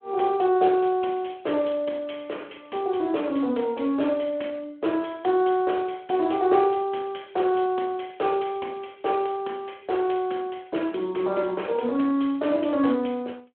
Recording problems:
telephone audio; 240 Hz to 3.4 kHz, Speex

